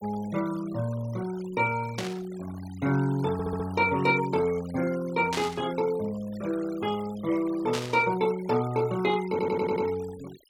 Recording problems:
denoising artefacts; signal-to-artefact ratio 19 dB
burst of static; at 2 s, at 5.5 s and at 7.5 s; peak -1 dB vs average level
stutter; at 3.5 s and at 9.5 s

